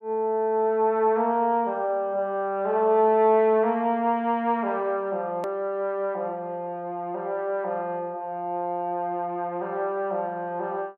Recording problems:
hard cut with a click; at 5.5 s

